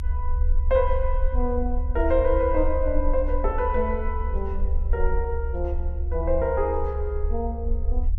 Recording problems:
rumble; below 68 Hz, SNR 1 dB

